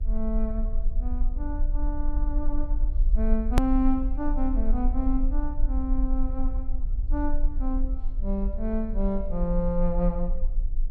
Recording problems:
hum; 60 Hz, harmonics up to 720 Hz, SNR 26 dB
low-frequency rumble; below 42 Hz, strongest tone 26 Hz, SNR -1 dB
hard cut with a click; at 3.5 s

